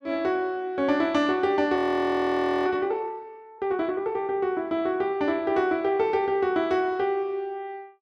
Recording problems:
frozen audio; at 2 s for 1 s

